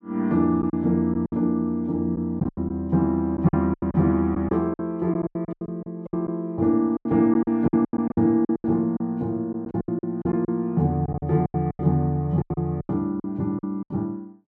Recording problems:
lost packets; 15% of the sound replaced, filled with silence

